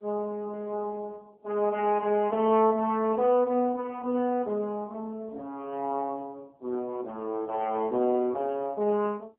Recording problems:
phone line; 240 Hz to 3.1 kHz, AMR-NB

